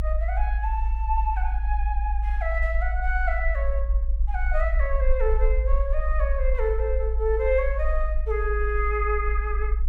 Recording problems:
rumble; below 54 Hz, SNR -2 dB

